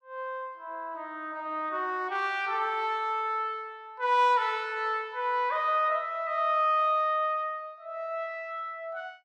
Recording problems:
none

